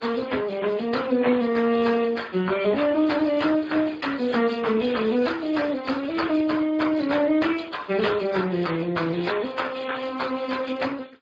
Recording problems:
codec artefacts; MP3, then Speex, log-spectral distance 8 dB

